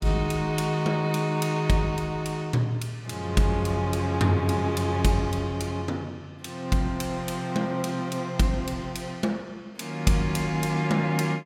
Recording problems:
none

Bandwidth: 16 kHz